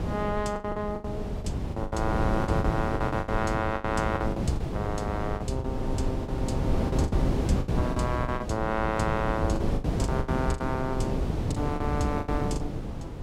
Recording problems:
wind noise; below 270 Hz, SNR -1 dB
packet loss; 14% of the sound replaced, filled with the last packet

